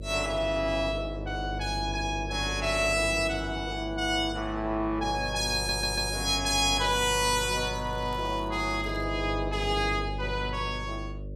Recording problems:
electrical hum; 50 Hz, harmonics up to 600 Hz, SNR 9 dB
stutter; at 5.5 s
crackling; from 6.5 to 9 s; loose cable, SNR 29 dB

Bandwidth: 14.5 kHz